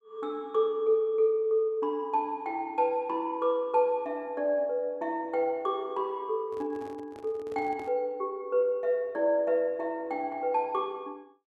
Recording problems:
microphone handling noise; from 6.5 to 8 s; peak -12 dB vs average level

